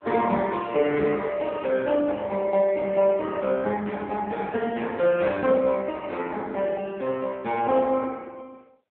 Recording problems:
phone line; 240 Hz to 3.5 kHz, AMR-NB

